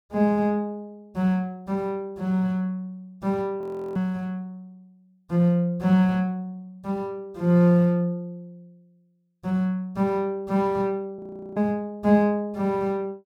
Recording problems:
audio freezing; at 3.5 s and at 11 s

